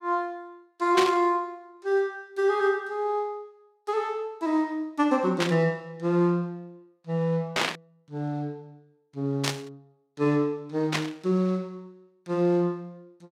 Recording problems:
static burst; 5 times, first at 1 s; peak +5 dB vs average level

